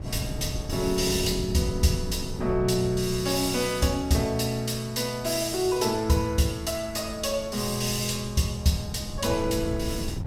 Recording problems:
wind noise; below 180 Hz, SNR 10 dB

